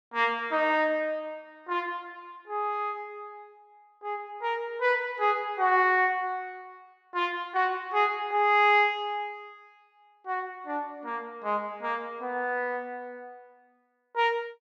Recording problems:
none

